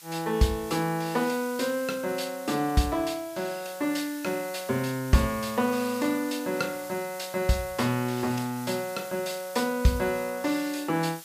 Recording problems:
hiss; slope +3 dB per octave, SNR 15 dB

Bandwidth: 15 kHz